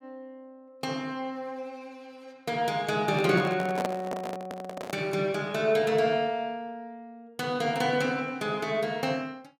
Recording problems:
handling noise; from 3 to 5 s; peak +1 dB vs average level

